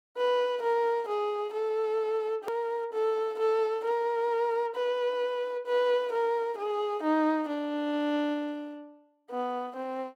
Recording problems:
click at an edit; at 2.5 s

